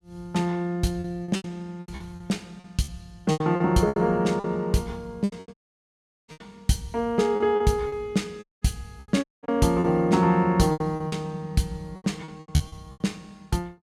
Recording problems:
lost packets; 14% of the sound replaced, filled with repeated pitch periods
audio cutting out; at 5.5 s for 0.5 s, at 8.5 s and at 9 s

